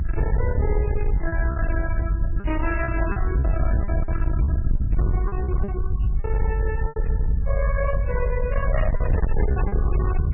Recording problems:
lossy codec; MP3, log-spectral distance 2 dB, nothing above 2.8 kHz
distortion; soft clipping, signal-to-distortion ratio 7 dB
low-frequency rumble; below 76 Hz, SNR -4 dB
packet loss; 7% of the sound replaced, filled with repeated pitch periods

